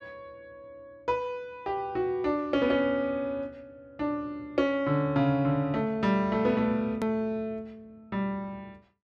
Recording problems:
click at an edit; at 7 s

